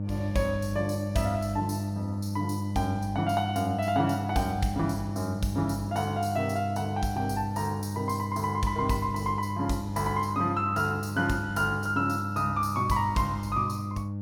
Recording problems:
electrical hum; 50 Hz, harmonics up to 600 Hz, SNR 4 dB

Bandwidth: 17.5 kHz